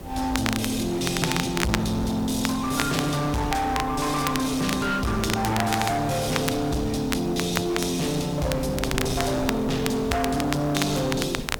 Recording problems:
distorted audio; hard clipping, signal-to-distortion ratio 8 dB
mains hum; 50 Hz, harmonics up to 600 Hz, SNR 25 dB
hiss; slope +2 dB per octave, SNR 25 dB
wind noise; below 450 Hz, SNR 12 dB
crackle; vinyl, SNR 7 dB

